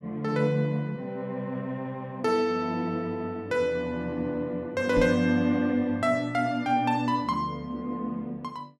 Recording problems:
microphone thump; at 5 s; peak +1 dB vs average level

